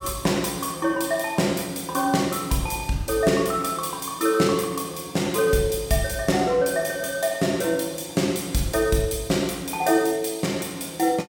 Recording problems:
none

